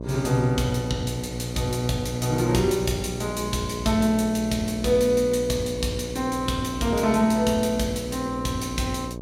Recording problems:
hum; 60 Hz, harmonics up to 1.1 kHz, SNR 10 dB

